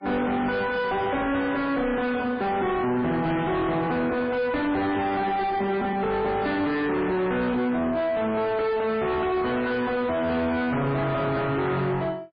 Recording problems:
lossy codec; MP3, log-spectral distance 2 dB, nothing above 4.5 kHz
distorted audio; soft clipping, signal-to-distortion ratio 6 dB

